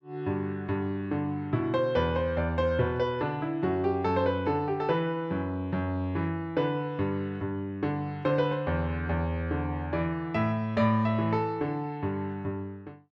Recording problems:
none

